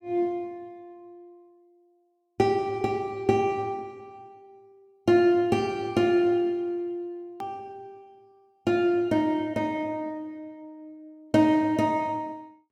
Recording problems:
hard cut with a click; at 7.5 s

